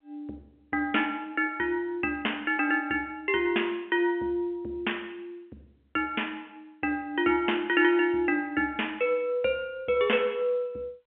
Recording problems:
phone line; 300 Hz to 3.3 kHz, G.711

